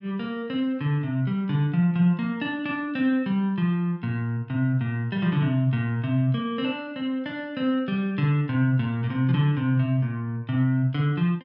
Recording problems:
none

